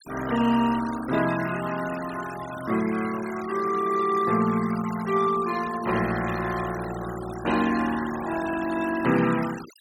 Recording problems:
denoising artefacts; signal-to-artefact ratio 14 dB

